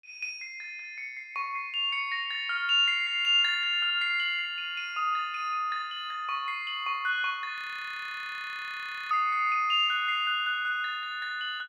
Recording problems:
frozen audio; at 7.5 s for 1.5 s

